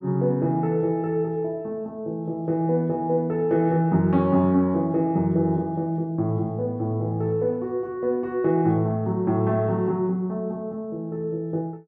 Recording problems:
none

